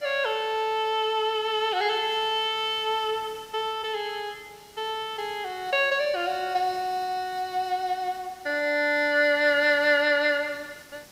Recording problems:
hiss; slope -2 dB per octave, SNR 24 dB

